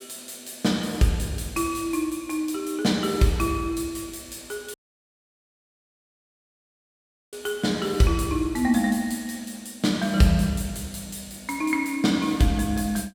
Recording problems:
audio cutting out; at 4.5 s for 2.5 s

